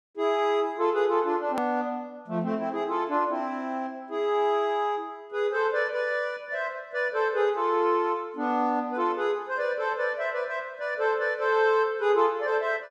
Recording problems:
click at an edit; at 1.5 s

